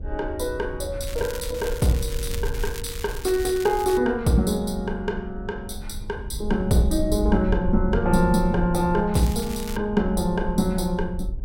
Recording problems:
rumble; below 72 Hz, SNR 8 dB
crackling; from 1 to 4 s and at 9 s; loose cable, SNR 14 dB

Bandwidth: 16 kHz